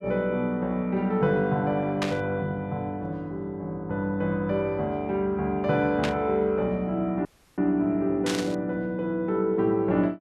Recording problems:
burst of static; at 2 s, at 6 s and at 8.5 s; peak +1 dB vs average level
dropout; at 7.5 s

